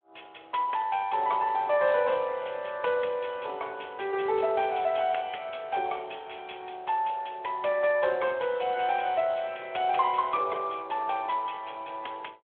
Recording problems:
telephone audio; 340 Hz to 3.4 kHz, Speex

